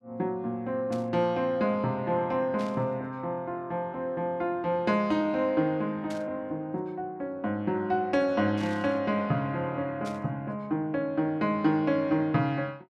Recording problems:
burst of static; 5 times, first at 1 s; peak -12 dB vs average level

